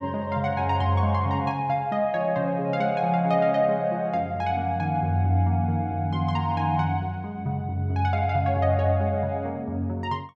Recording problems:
none

